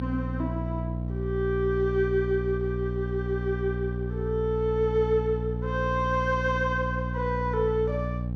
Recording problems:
electrical hum; 60 Hz, harmonics up to 540 Hz, SNR 3 dB

